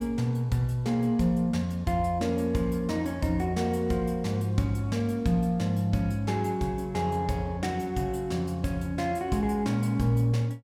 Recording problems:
none

